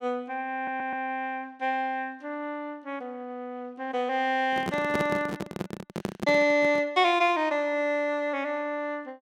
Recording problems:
audio stuttering; at 0.5 s
handling noise; from 4.5 to 7 s; peak +1 dB vs average level

